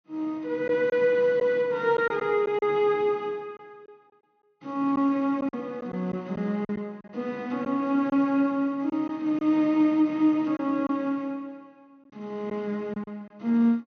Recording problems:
treble missing; nothing above 6.4 kHz
packet loss; 4% of the sound replaced, filled with silence

